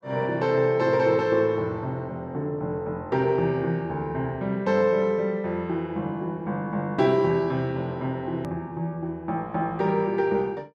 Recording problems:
edit click; at 8.5 s

